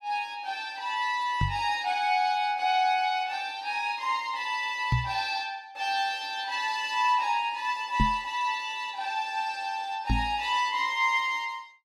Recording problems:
microphone bump; 4 times, first at 1.5 s; peak +6 dB vs average level

